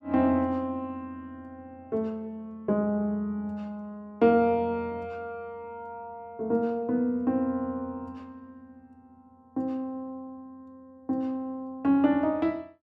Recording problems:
none

